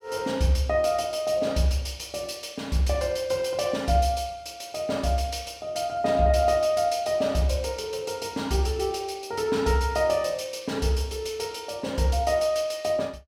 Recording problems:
none

